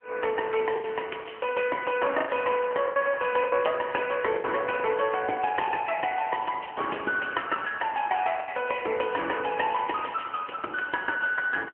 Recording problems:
phone line; 280 Hz to 3.1 kHz, AMR-NB
packet loss; 4% of the sound replaced, filled with the last packet

